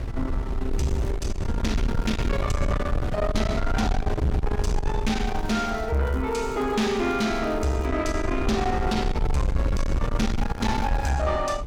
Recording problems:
distorted audio; soft clipping, signal-to-distortion ratio 8 dB
wind noise; below 140 Hz, SNR 3 dB
crackle; 4 times, first at 0.5 s; loose cable, SNR 27 dB

